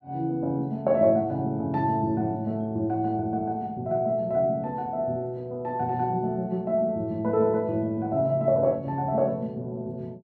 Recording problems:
none

